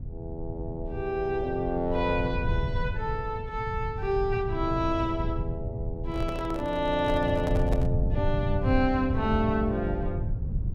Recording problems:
rumble; below 120 Hz, SNR 3 dB
handling noise; from 6 to 8 s; peak -2 dB vs average level

